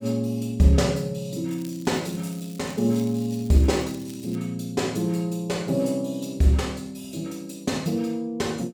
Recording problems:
crackle; from 1.5 to 4.5 s; loose cable, SNR 22 dB

